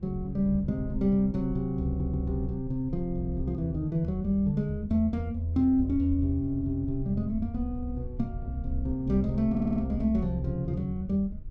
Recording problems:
low-frequency rumble; below 68 Hz, SNR 13 dB
audio stuttering; at 2 s and at 9.5 s

